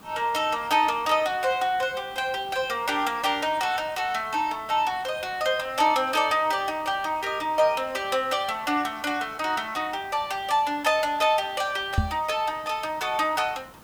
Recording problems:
background hiss; SNR 24 dB
knock on the microphone; at 12 s; peak +5 dB vs average level

